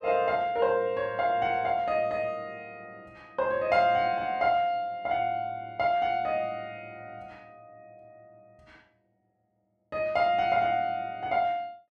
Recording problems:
none

